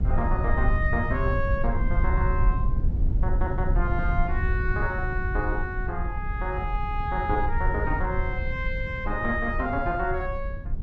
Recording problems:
low-frequency rumble; below 78 Hz, SNR -1 dB

